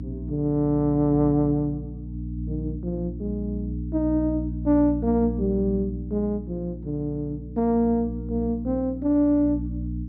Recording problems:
low-pass filter; nothing above 5.7 kHz
mains hum; 60 Hz, harmonics up to 300 Hz, SNR 8 dB

